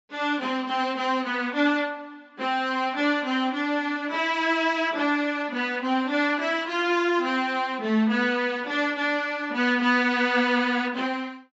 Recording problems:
treble cut off; nothing above 7.6 kHz

